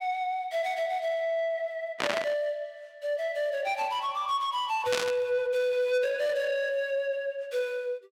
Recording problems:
distortion; soft clipping, signal-to-distortion ratio 12 dB
static burst; at 2 s and at 5 s; peak +4 dB vs average level

